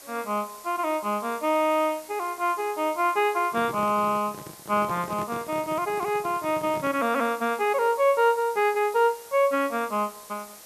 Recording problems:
background hiss; SNR 19 dB
handling noise; from 3.5 to 7 s; peak -9 dB vs average level

